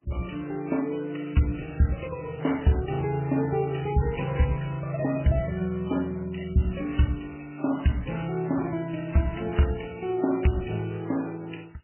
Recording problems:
codec artefacts; MP3, then MP3, log-spectral distance 7 dB, nothing above 3 kHz

